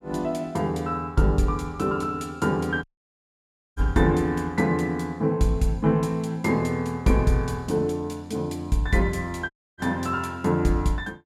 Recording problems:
dropout; at 3 s for 1 s and at 9.5 s

